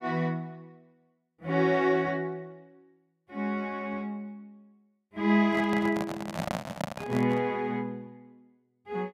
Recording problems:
handling noise; from 5.5 to 7.5 s; peak +1 dB vs average level

